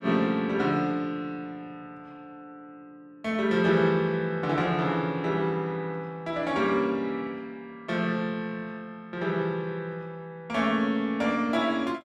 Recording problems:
none

